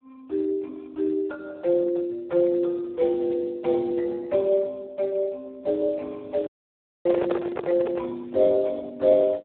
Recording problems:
phone line; 300 Hz to 2.3 kHz, Speex
microphone handling noise; from 6.5 to 8 s; peak 0 dB vs average level
audio cutting out; at 6.5 s for 0.5 s

